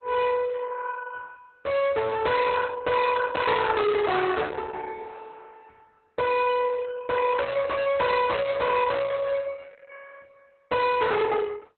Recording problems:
lossy codec; Opus, log-spectral distance 4 dB, nothing above 4 kHz
distortion; hard clipping, uneven, signal-to-distortion ratio 7 dB

